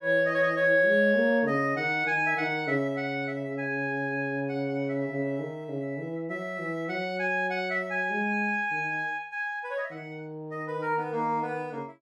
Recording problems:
none

